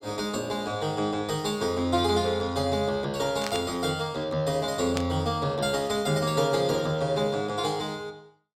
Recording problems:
burst of static; at 3.5 s and at 5 s; peak -1 dB vs average level

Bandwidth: 16.5 kHz